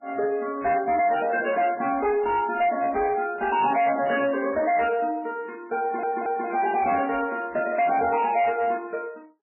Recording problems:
codec artefacts; MP3, log-spectral distance 3 dB, nothing above 2.8 kHz
distortion; hard clipping, signal-to-distortion ratio 10 dB
stutter; at 6 s

